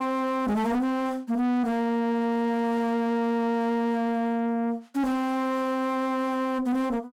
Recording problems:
distortion; soft clipping, signal-to-distortion ratio 5 dB

